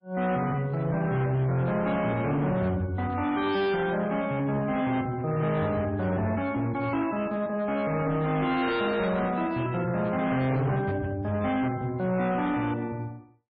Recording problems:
codec artefacts; MP3, log-spectral distance 2 dB, nothing above 5 kHz
distorted audio; hard clipping, signal-to-distortion ratio 10 dB

